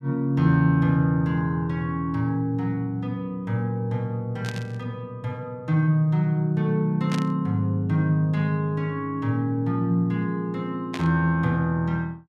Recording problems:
static burst; at 4.5 s, at 7 s and at 11 s; peak -5 dB vs average level

